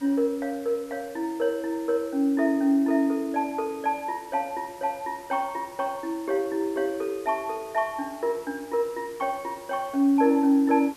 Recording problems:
background hiss; slope -2 dB per octave, SNR 23 dB

